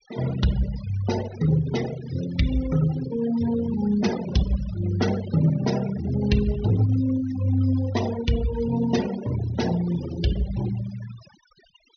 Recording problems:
low-pass filter; nothing above 6.3 kHz
noise reduction artefacts; signal-to-artefact ratio 13 dB

